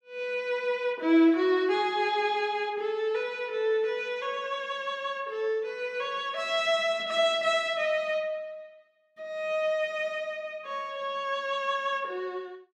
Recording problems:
none

